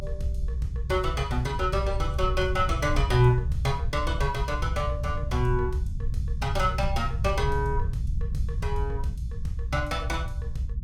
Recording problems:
rumble; below 84 Hz, SNR 3 dB

